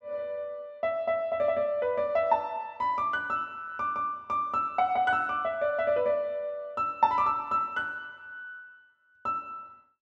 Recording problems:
none

